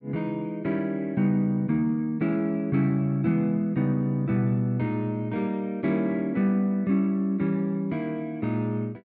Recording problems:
none

